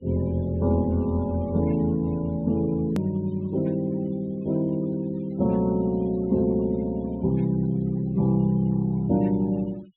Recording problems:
treble missing; nothing above 4 kHz
noise reduction artefacts; signal-to-artefact ratio 27 dB
click at an edit; at 3 s

